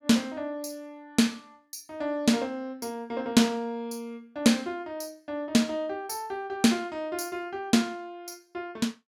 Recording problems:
none

